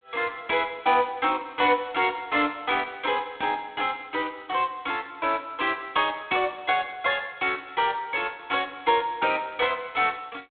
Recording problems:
phone line; 190 Hz to 3.5 kHz, G.726

